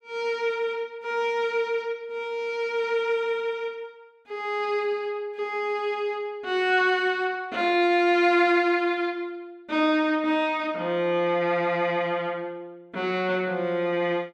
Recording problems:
none

